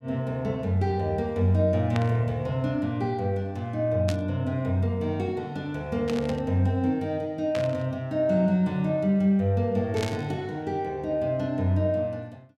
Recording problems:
burst of static; 5 times, first at 2 s; peak -3 dB vs average level

